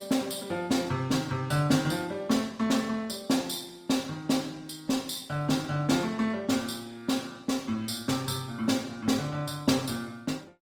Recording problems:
lossy codec; Opus, log-spectral distance 4 dB, nothing above 18.5 kHz

